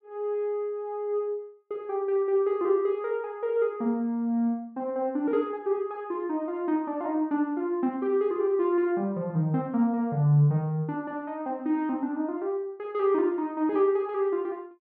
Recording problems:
none

